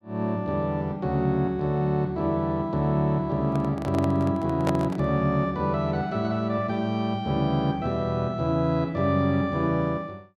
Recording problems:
handling noise; from 3.5 to 5 s; peak 0 dB vs average level

